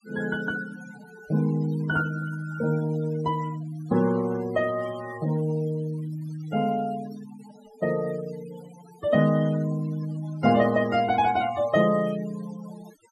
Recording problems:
noise reduction artefacts; signal-to-artefact ratio 18 dB

